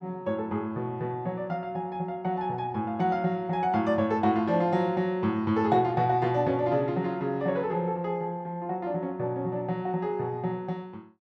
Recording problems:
none

